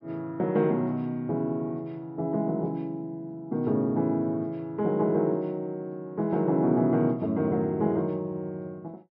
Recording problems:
low-pass filter; nothing above 5.5 kHz

